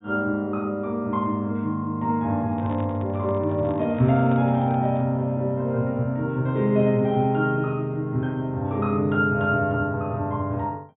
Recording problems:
low-pass filter; nothing above 4 kHz
handling noise; from 2.5 to 5 s; peak -11 dB vs average level

